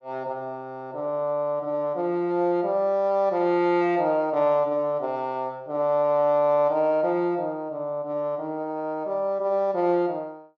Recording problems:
none

